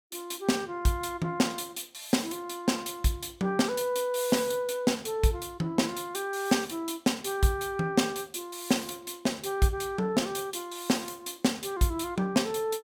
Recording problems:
none

